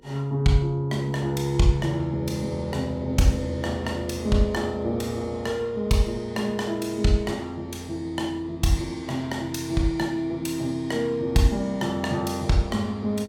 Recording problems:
hum; 50 Hz, harmonics up to 500 Hz, SNR 28 dB

